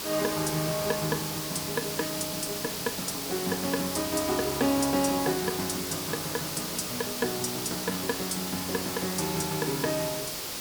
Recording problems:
hiss; SNR 2 dB

